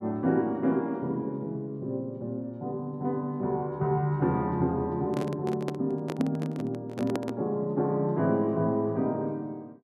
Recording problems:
microphone handling noise; from 5 to 7.5 s; peak +1 dB vs average level

